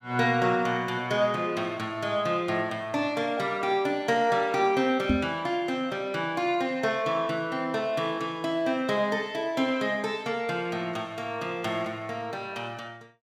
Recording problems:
microphone thump; at 5 s; peak +6 dB vs average level

